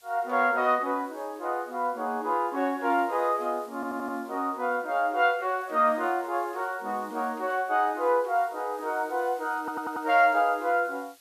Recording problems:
hiss; slope +2 dB per octave, SNR 27 dB
stutter; at 4 s and at 9.5 s

